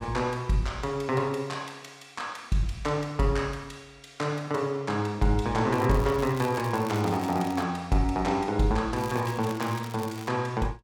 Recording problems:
crackle; from 5.5 to 7.5 s and from 9 to 10 s; loose cable, SNR 17 dB

